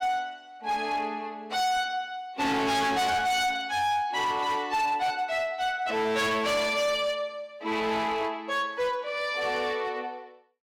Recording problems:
distortion; hard clipping, uneven, signal-to-distortion ratio 8 dB

